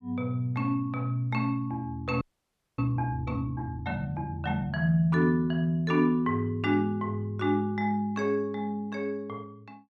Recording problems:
frozen audio; at 2 s for 0.5 s

